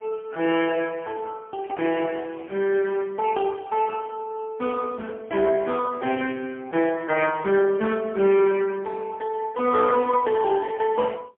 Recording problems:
telephone audio; 220 Hz to 3.1 kHz, AMR-NB, then MP3

